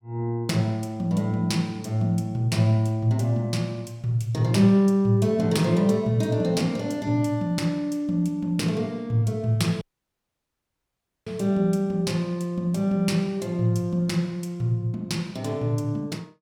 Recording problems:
audio cutting out; at 10 s for 1.5 s

